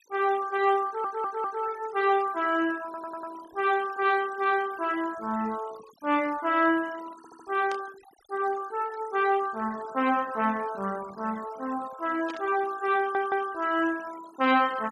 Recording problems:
denoising artefacts; signal-to-artefact ratio 18 dB
audio stuttering; 4 times, first at 1 s
static burst; at 7.5 s and at 12 s; peak -10 dB vs average level

